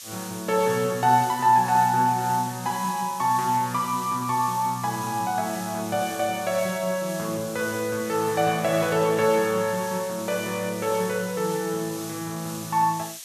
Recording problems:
hiss; slope +5 dB per octave, SNR 13 dB

